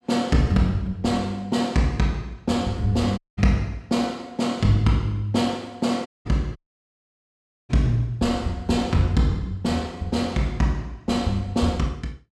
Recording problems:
audio cutting out; at 3 s, at 6 s and at 6.5 s for 1 s

